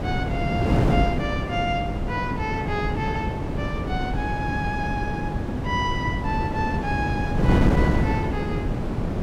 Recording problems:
wind on the microphone; below 330 Hz, SNR -4 dB

